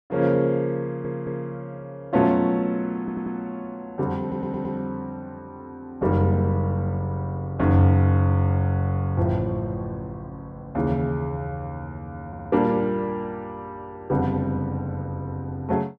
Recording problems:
stutter; 4 times, first at 1 s

